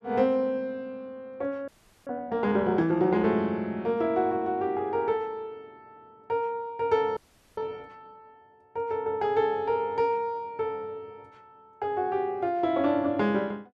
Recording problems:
frozen audio; at 1.5 s and at 7 s

